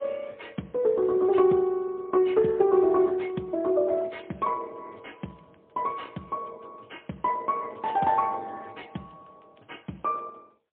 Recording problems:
phone line; 170 Hz to 3.7 kHz, AMR-NB, then MP3

